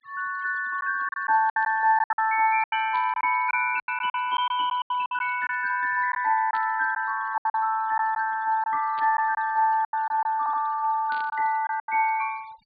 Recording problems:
treble missing; nothing above 4.5 kHz
noise reduction artefacts; signal-to-artefact ratio 25 dB
lost packets; 10% of the sound replaced, filled with silence
static burst; 5 times, first at 1.5 s; peak -14 dB vs average level
stutter; at 10 s

